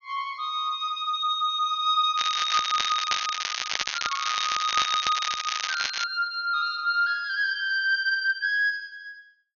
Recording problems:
treble cut off; nothing above 6.7 kHz
crackling; from 2 to 6 s; loose cable, SNR 3 dB

